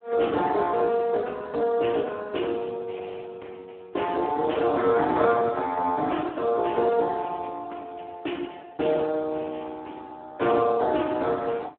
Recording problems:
telephone audio; 240 Hz to 2.9 kHz, Speex

